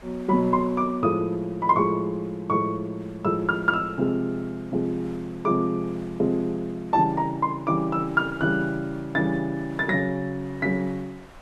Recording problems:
wind on the microphone; below 1.4 kHz, SNR 23 dB

